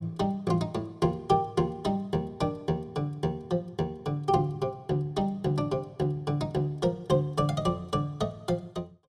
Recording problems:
none

